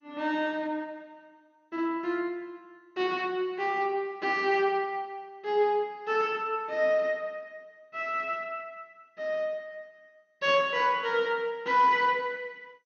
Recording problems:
codec artefacts; MP2, log-spectral distance 2 dB, nothing above 6.3 kHz

